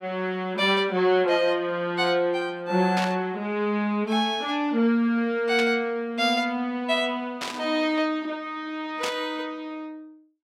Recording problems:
static burst; 4 times, first at 3 s; peak -1 dB vs average level

